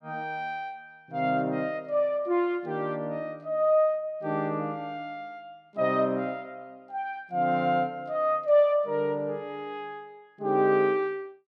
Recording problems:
none

